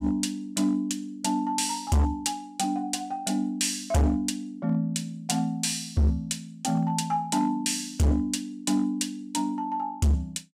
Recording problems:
distortion; hard clipping, signal-to-distortion ratio 6 dB

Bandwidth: 15.5 kHz